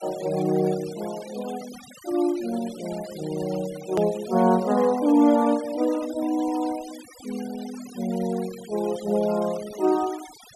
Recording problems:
noise reduction artefacts; signal-to-artefact ratio 18 dB
hard cut with a click; at 4 s

